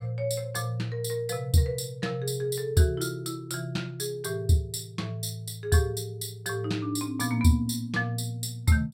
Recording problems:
none

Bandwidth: 16 kHz